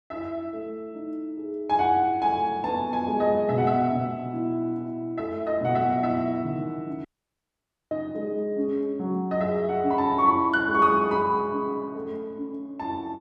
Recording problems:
dropout; at 7 s for 1 s

